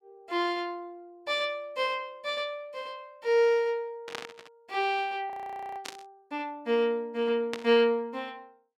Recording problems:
burst of static; at 4 s, at 6 s and at 7.5 s; peak -2 dB vs average level
frozen audio; at 5.5 s

